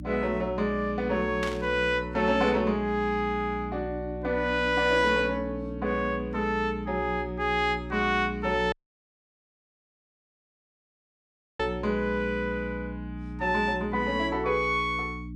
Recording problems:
mains hum; 60 Hz, harmonics up to 300 Hz, SNR 11 dB
static burst; at 1.5 s; peak -4 dB vs average level
dropout; at 8.5 s for 3 s

